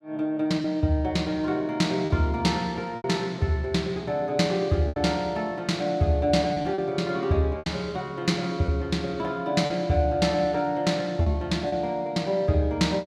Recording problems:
packet loss; 4% of the sound replaced, filled with repeated pitch periods

